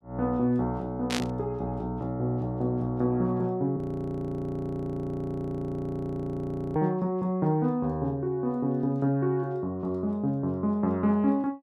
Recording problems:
static burst; at 1 s; peak +3 dB vs average level
frozen audio; at 4 s for 3 s

